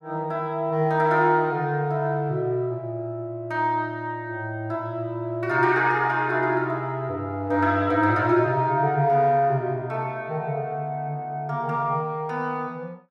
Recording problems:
none

